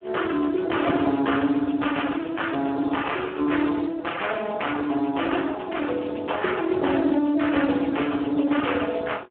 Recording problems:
telephone audio; 220 Hz to 3.4 kHz, Speex

